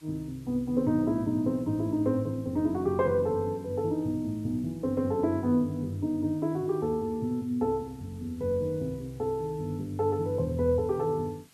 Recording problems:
hiss; slope 0 dB per octave, SNR 29 dB

